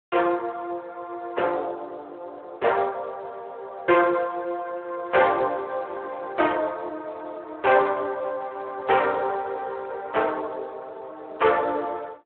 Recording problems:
telephone audio; 300 Hz to 3.2 kHz, Speex

